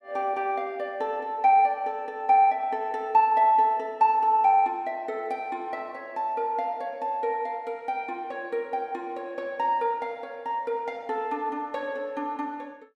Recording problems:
none

